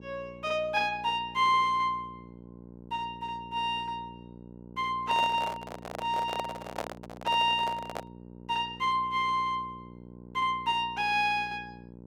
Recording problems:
mains hum; 60 Hz, harmonics up to 1 kHz, SNR 19 dB
microphone handling noise; from 5 to 8 s; peak -1 dB vs average level

